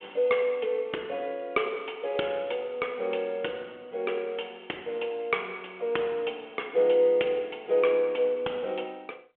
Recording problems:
telephone audio; 280 Hz to 3.4 kHz, G.726

